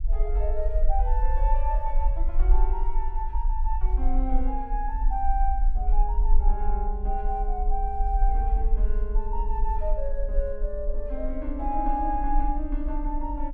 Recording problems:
rumble; below 42 Hz, SNR -4 dB

